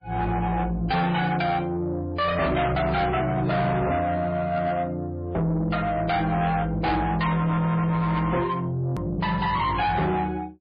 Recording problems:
codec artefacts; MP3, log-spectral distance 2 dB, nothing above 4.1 kHz
distorted audio; soft clipping, signal-to-distortion ratio 8 dB
hard cut with a click; at 9 s

